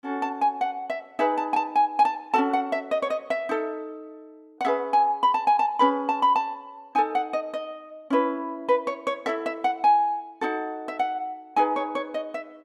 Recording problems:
none

